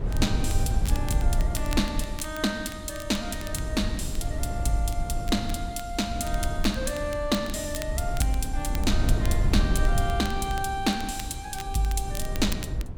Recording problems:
wind noise; below 90 Hz, SNR 1 dB
crackle; vinyl, SNR 14 dB

